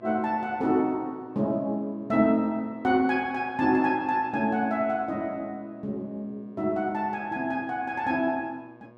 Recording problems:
hum; 60 Hz, harmonics up to 2.3 kHz, SNR 25 dB

